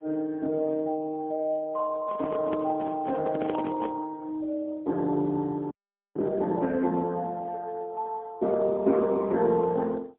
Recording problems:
telephone audio; 170 Hz to 2.3 kHz, AMR-NB, then MP3
handling noise; from 2 to 4 s; peak -1 dB vs average level
audio freezing; at 5.5 s

